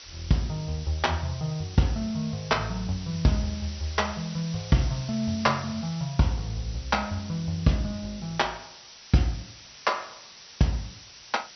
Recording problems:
treble missing; nothing above 6 kHz
background hiss; slope +2 dB per octave, SNR 15 dB

